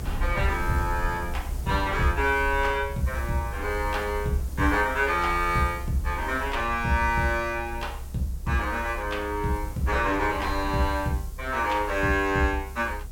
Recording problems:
background hiss; slope +4 dB per octave, SNR 22 dB
rumble; below 68 Hz, SNR 10 dB

